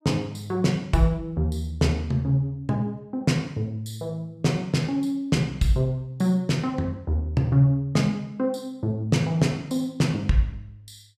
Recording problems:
none

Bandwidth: 14.5 kHz